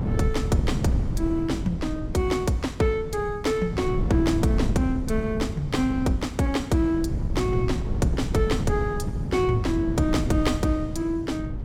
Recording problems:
mains hum; 50 Hz, harmonics up to 300 Hz, SNR 17 dB
wind on the microphone; below 170 Hz, SNR 5 dB

